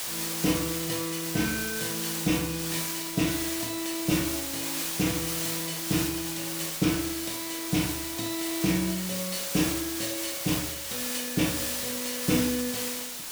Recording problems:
hiss; slope +1 dB per octave, SNR 0 dB

